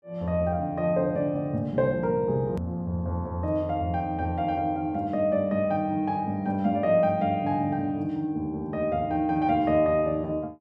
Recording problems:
edit click; at 2.5 s

